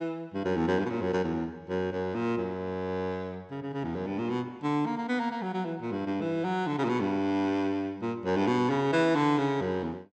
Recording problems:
none

